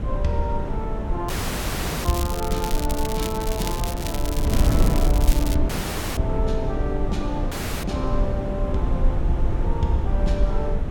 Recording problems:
low-frequency rumble; below 50 Hz, SNR 1 dB
wind noise; below 240 Hz, SNR -1 dB
crackle; from 1.5 to 5.5 s; loose cable, SNR 4 dB
audio cutting out; at 1.5 s for 0.5 s, at 5.5 s and at 7.5 s

